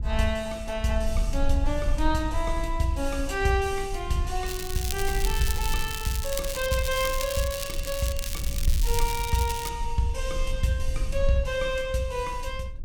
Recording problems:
rumble; below 52 Hz, strongest tone 22 Hz, SNR 5 dB
crackling; from 4.5 to 9.5 s; loose cable, SNR 5 dB

